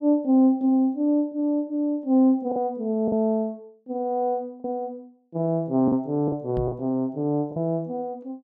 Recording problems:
lost packets; 4% of the sound replaced, filled with the last packet
microphone bump; at 6.5 s; peak -5 dB vs average level

